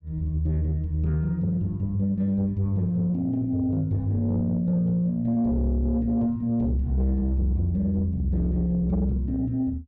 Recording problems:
distorted audio; soft clipping, signal-to-distortion ratio 12 dB

